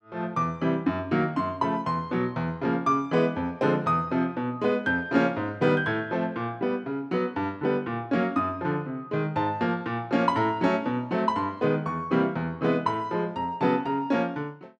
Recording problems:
none

